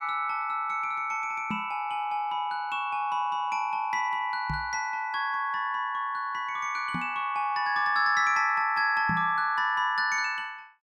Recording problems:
microphone thump; 4 times, first at 1.5 s; peak -2 dB vs average level

